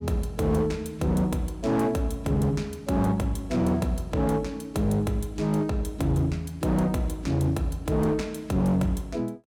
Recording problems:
distortion; hard clipping, signal-to-distortion ratio 10 dB

